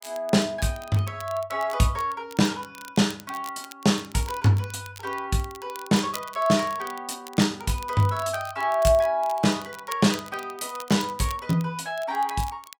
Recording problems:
crackling; vinyl, SNR 18 dB

